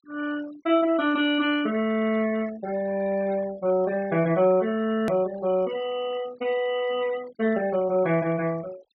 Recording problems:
treble missing; nothing above 6 kHz
denoising artefacts; signal-to-artefact ratio 20 dB
edit click; at 5 s

